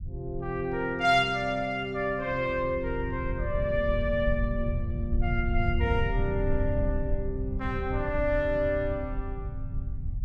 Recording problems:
rumble; below 94 Hz, SNR 4 dB

